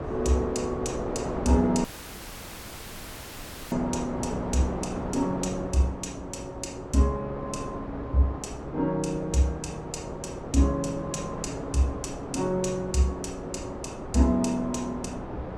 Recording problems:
hum; 60 Hz, harmonics up to 420 Hz, SNR 20 dB
wind noise; below 720 Hz, SNR 8 dB
dropout; at 2 s for 2 s

